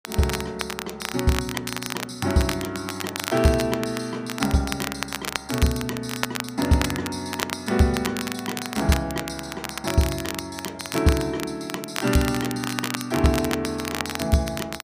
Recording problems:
crackle; vinyl, SNR 6 dB

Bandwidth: 15 kHz